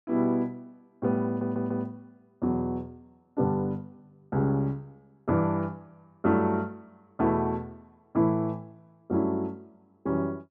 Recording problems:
audio stuttering; at 1.5 s

